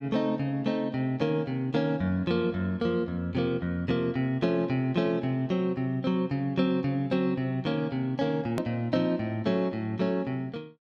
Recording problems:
edit click; at 8.5 s

